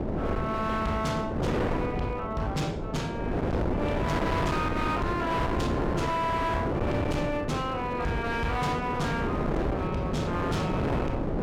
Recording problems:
distorted audio; hard clipping, uneven, signal-to-distortion ratio 6 dB
wind on the microphone; below 580 Hz, SNR 0 dB

